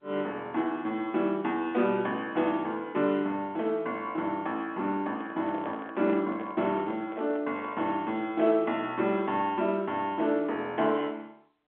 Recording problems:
phone line; 190 Hz to 3.5 kHz, G.711
microphone handling noise; from 5 to 8 s; peak -8 dB vs average level

